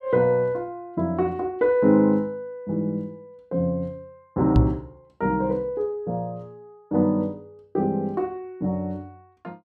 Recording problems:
microphone thump; at 4.5 s; peak +10 dB vs average level

